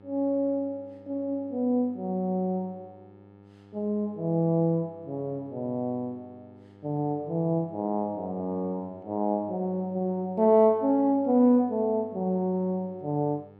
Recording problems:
electrical hum; 50 Hz, harmonics up to 1.4 kHz, SNR 25 dB

